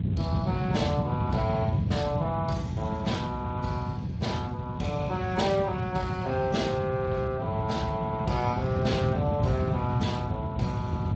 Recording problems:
lossy compression; AAC, then Speex, log-spectral distance 3 dB, nothing above 7.3 kHz
wind on the microphone; below 190 Hz, SNR 0 dB

